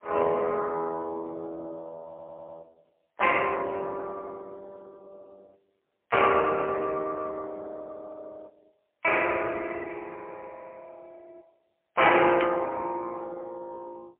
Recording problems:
telephone audio; 320 Hz to 3.1 kHz, AMR-NB, then MP3
stutter; at 2 s
static burst; at 12 s; peak -2 dB vs average level

